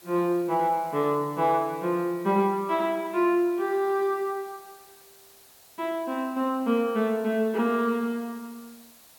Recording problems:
background hiss; SNR 25 dB

